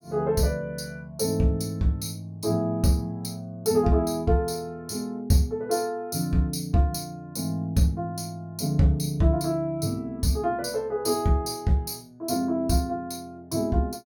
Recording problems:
none

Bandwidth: 17.5 kHz